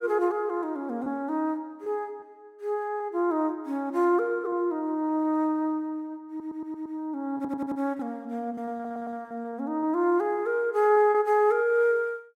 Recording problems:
packet loss; 4% of the sound replaced, filled with repeated pitch periods
stutter; at 6.5 s, at 7.5 s and at 8.5 s

